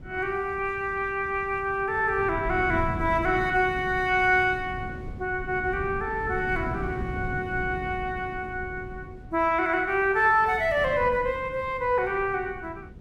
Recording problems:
wind noise; below 210 Hz, SNR 13 dB

